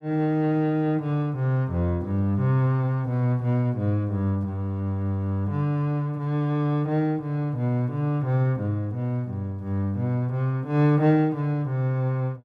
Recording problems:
none

